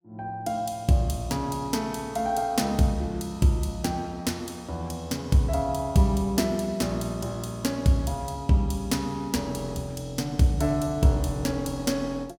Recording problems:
none

